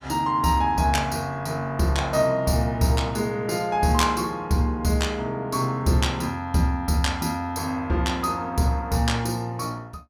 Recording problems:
none

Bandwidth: 18 kHz